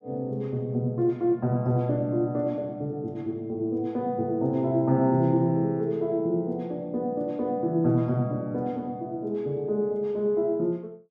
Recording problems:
none

